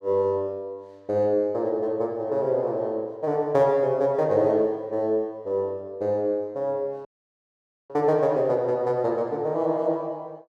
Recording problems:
dropout; at 7 s for 1 s

